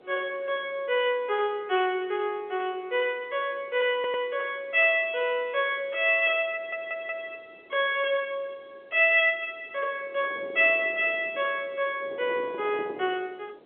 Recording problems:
telephone audio; 300 Hz to 3.4 kHz, G.711
wind on the microphone; below 580 Hz, SNR 22 dB
stutter; at 4 s and at 6.5 s

